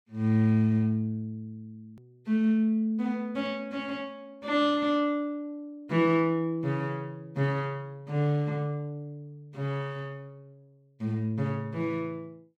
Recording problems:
hard cut with a click; at 2 s

